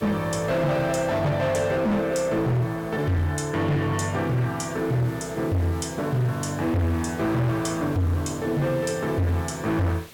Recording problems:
distortion; hard clipping, signal-to-distortion ratio 8 dB
background hiss; SNR 22 dB

